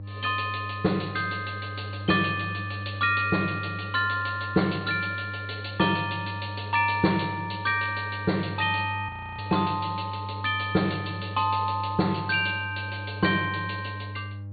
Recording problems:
treble cut off; nothing above 4.5 kHz
hum; 50 Hz, harmonics up to 500 Hz, SNR 10 dB
frozen audio; at 9 s

